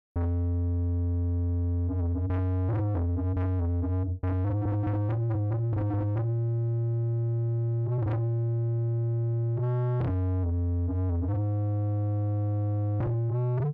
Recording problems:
distorted audio; soft clipping, signal-to-distortion ratio 6 dB

